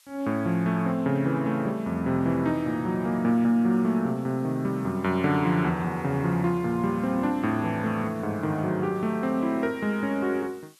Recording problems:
hiss; SNR 30 dB

